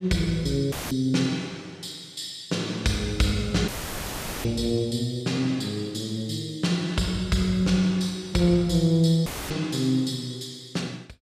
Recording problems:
audio cutting out; at 0.5 s, at 3.5 s for 1 s and at 9.5 s; filled with static

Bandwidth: 14.5 kHz